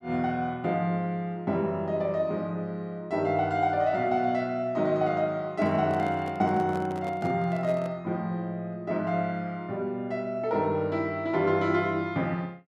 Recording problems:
microphone handling noise; from 5.5 to 8 s; peak -7 dB vs average level

